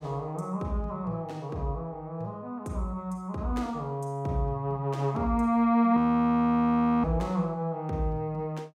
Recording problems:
frozen audio; at 6 s for 1 s

